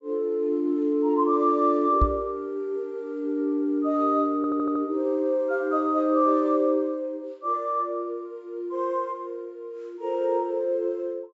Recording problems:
treble cut off; nothing above 8 kHz
microphone bump; at 2 s; peak +5 dB vs average level
audio stuttering; at 4.5 s

